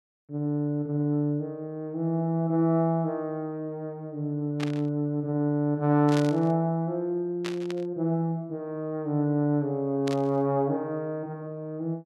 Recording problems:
static burst; 4 times, first at 4.5 s; peak -4 dB vs average level

